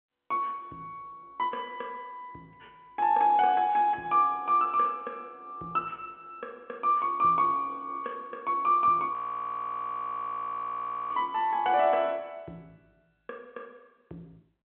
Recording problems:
telephone audio; 190 Hz to 3.8 kHz, G.711
frozen audio; at 9 s for 2 s

